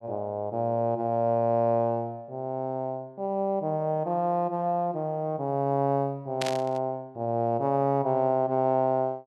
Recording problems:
burst of static; at 6.5 s; peak 0 dB vs average level

